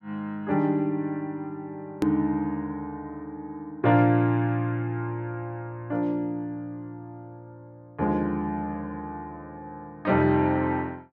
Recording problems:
click at an edit; at 2 s

